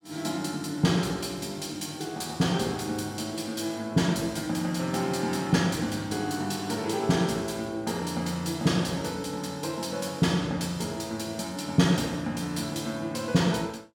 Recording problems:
none

